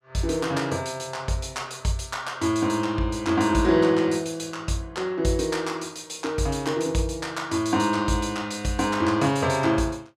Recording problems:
none

